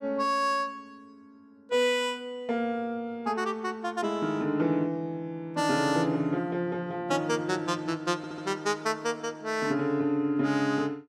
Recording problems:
stutter; at 8 s

